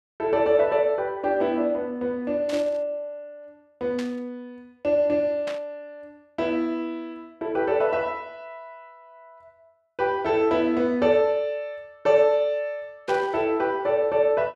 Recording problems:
burst of static; 4 times, first at 2.5 s; peak -8 dB vs average level

